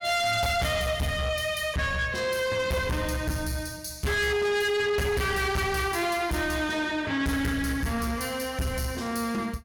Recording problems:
distortion; soft clipping, signal-to-distortion ratio 8 dB

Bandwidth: 18 kHz